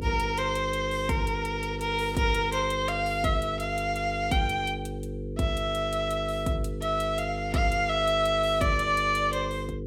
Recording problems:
hum; 50 Hz, harmonics up to 500 Hz, SNR 8 dB

